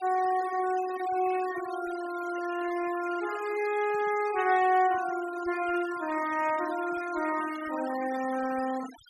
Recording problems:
denoising artefacts; signal-to-artefact ratio 15 dB

